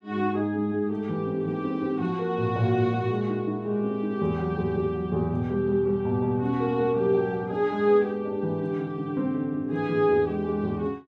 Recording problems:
none

